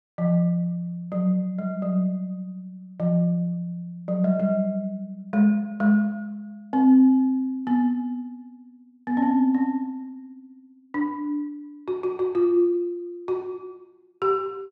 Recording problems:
none

